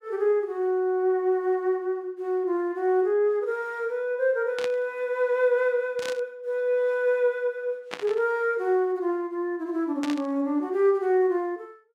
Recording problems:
burst of static; 4 times, first at 4.5 s; peak -4 dB vs average level

